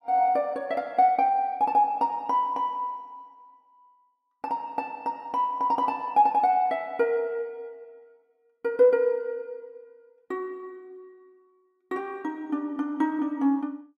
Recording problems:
none

